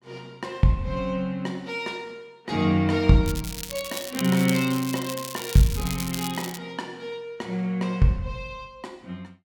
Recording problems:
crackle; from 3.5 to 6.5 s; loose cable, SNR 9 dB

